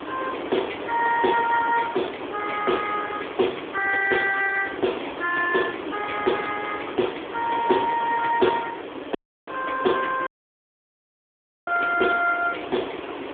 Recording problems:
telephone audio; 260 Hz to 3 kHz, AMR-NB
hiss; SNR 9 dB
dropout; at 9 s and at 10 s for 1.5 s

